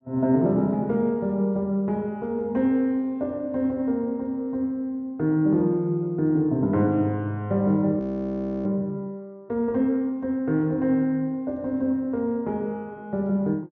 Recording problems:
treble missing; nothing above 6.6 kHz
audio freezing; at 8 s for 0.5 s

